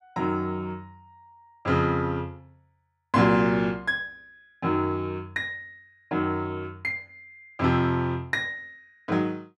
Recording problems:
none

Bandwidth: 12.5 kHz